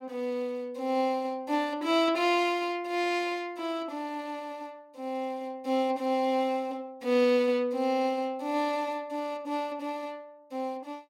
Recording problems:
none

